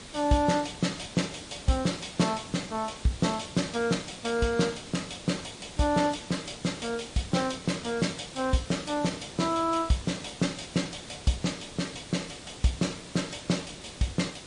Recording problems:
lossy codec; MP3, log-spectral distance 10 dB
background hiss; SNR 13 dB

